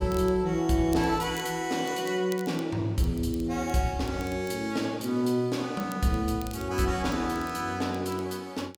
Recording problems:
crackling; vinyl, SNR 22 dB

